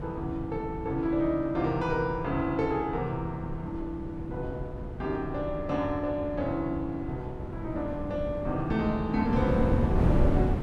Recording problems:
wind on the microphone; below 250 Hz, SNR 3 dB

